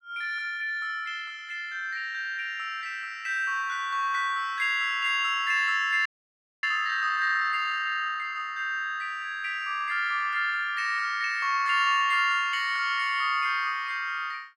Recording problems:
audio freezing; at 6 s for 0.5 s

